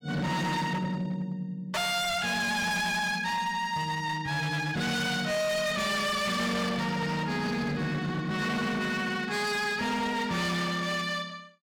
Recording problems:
distorted audio; hard clipping, signal-to-distortion ratio 7 dB

